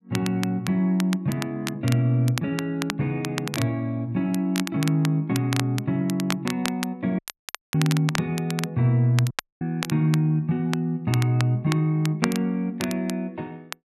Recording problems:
crackling; vinyl, SNR 10 dB
dropout; at 7 s for 0.5 s and at 9.5 s

